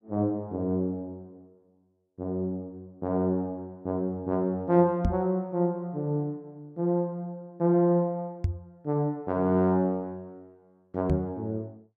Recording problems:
knock on the microphone; at 5 s, at 8.5 s and at 11 s; peak +5 dB vs average level

